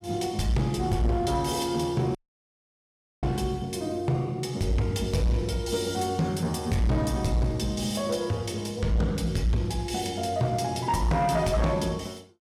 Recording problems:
distorted audio; soft clipping, signal-to-distortion ratio 11 dB
audio cutting out; at 2 s for 1 s

